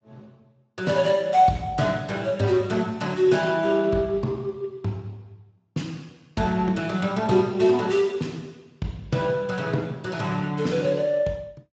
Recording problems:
lossy codec; Speex, log-spectral distance 3 dB, nothing above 7.6 kHz

